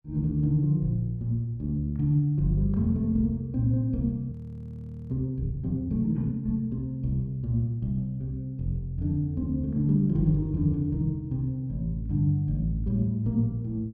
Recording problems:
frozen audio; at 4.5 s for 1 s

